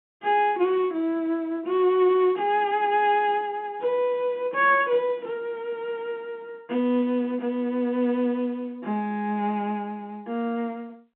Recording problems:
phone line; 150 Hz to 3.6 kHz, G.711

